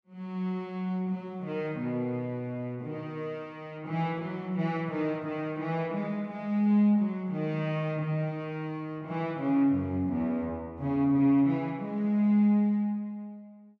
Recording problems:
none

